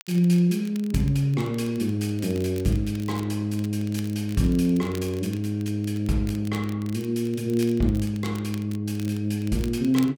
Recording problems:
crackling; vinyl, SNR 21 dB

